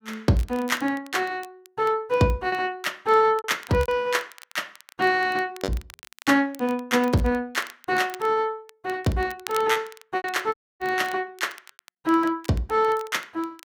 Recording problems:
crackling; vinyl, SNR 21 dB
lost packets; 4% of the sound replaced, filled with repeated pitch periods
audio cutting out; at 11 s

